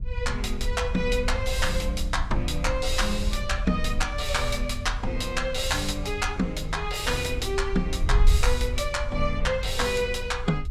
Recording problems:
wind on the microphone; below 58 Hz, SNR 4 dB

